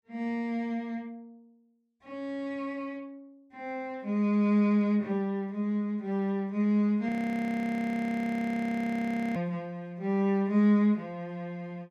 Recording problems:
frozen audio; at 7 s for 2.5 s

